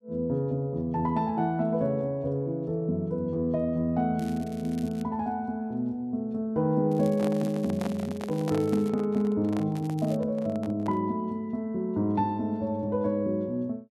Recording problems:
crackle; at 4 s, from 7 to 9 s and at 10 s; loose cable, SNR 24 dB
handling noise; from 7 to 11 s; peak -5 dB vs average level

